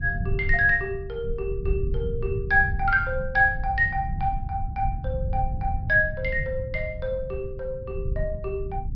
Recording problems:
treble missing; nothing above 5.5 kHz
rumble; below 100 Hz, SNR 6 dB

